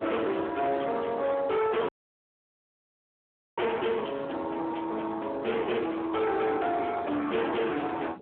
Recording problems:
telephone audio; 240 Hz to 2.6 kHz, Speex
distortion; hard clipping, signal-to-distortion ratio 7 dB
wind on the microphone; below 970 Hz, SNR 20 dB
dropout; at 2 s for 1.5 s

